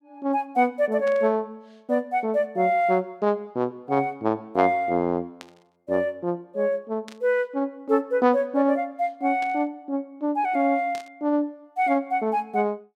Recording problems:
burst of static; 5 times, first at 1 s; peak -12 dB vs average level

